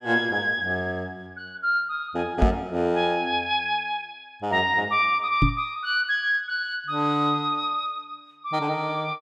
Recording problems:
knock on the microphone; at 2.5 s and at 5.5 s; peak +7 dB vs average level

